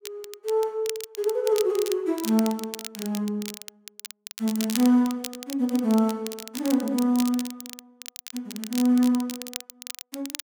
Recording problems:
crackle; vinyl, SNR 12 dB

